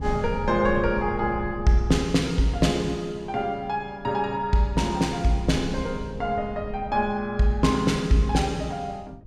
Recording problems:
rumble; below 130 Hz, SNR 13 dB

